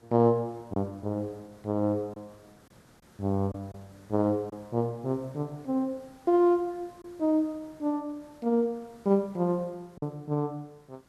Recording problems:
hiss; SNR 28 dB
lost packets; 1.7% of the sound replaced, filled with silence

